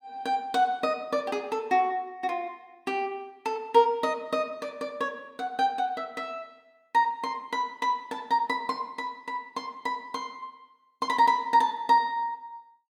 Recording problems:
none

